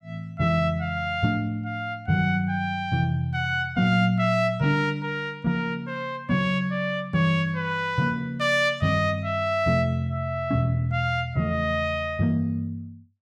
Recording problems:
none

